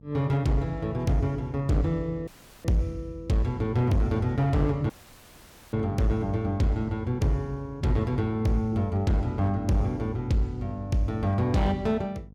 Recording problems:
distorted audio; hard clipping, signal-to-distortion ratio 12 dB
hum; 50 Hz, harmonics up to 550 Hz, SNR 25 dB
dropout; at 2.5 s and at 5 s for 1 s

